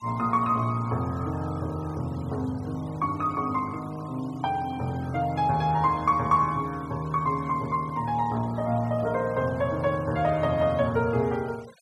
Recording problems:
noise reduction artefacts; signal-to-artefact ratio 23 dB

